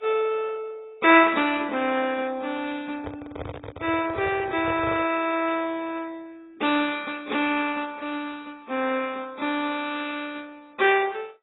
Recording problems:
lossy compression; MP2, then AAC, log-spectral distance 4 dB, nothing above 3.8 kHz
microphone handling noise; from 3 to 5 s; peak -6 dB vs average level

